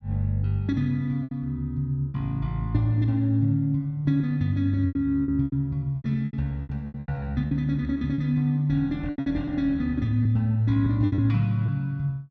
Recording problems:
packet loss; 10% of the sound replaced, filled with repeated pitch periods

